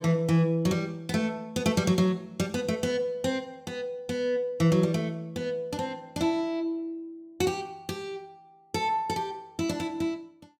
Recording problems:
none

